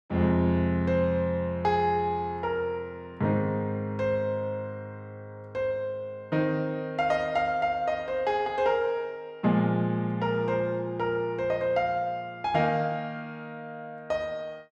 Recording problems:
none

